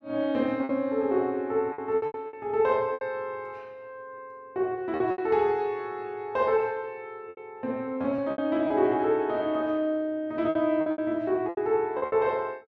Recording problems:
lost packets; 9% of the sound replaced, filled with repeated pitch periods

